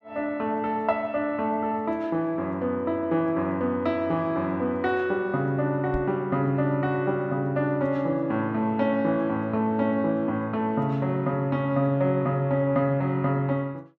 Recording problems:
microphone thump; at 6 s; peak -3 dB vs average level

